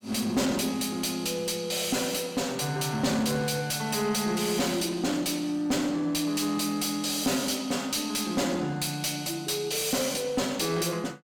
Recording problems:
distortion; soft clipping, signal-to-distortion ratio 10 dB

